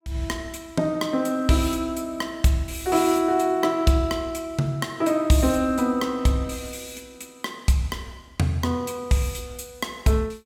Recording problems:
none

